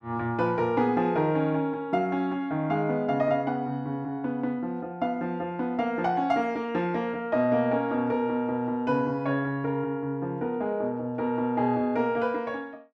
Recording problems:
none

